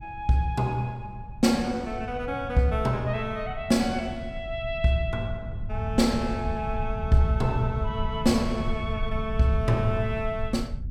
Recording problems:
low-frequency rumble; below 96 Hz, SNR 9 dB

